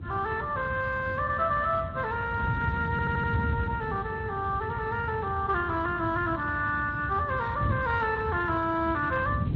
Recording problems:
lossy codec; Vorbis, then Speex, log-spectral distance 3 dB
wind on the microphone; below 180 Hz, SNR 6 dB
audio stuttering; at 3 s

